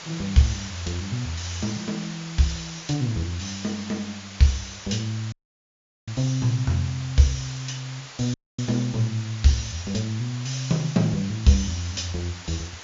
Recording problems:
treble missing; nothing above 7.3 kHz
hiss; slope 0 dB per octave, SNR 13 dB
dropout; at 5.5 s for 1 s and at 8.5 s

